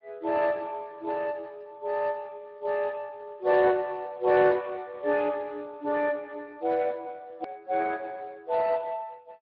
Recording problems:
treble cut off; nothing above 5.5 kHz
lossy codec; Speex, log-spectral distance 3 dB
click at an edit; at 7.5 s

